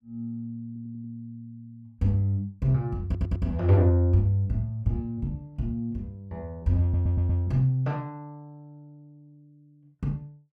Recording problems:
audio stuttering; at 0.5 s, at 3 s and at 7 s

